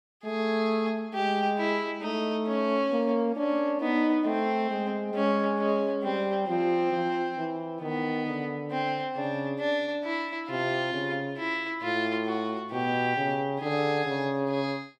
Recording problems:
none

